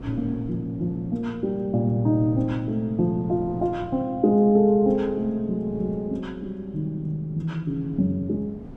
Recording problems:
wind noise; below 280 Hz, SNR 18 dB

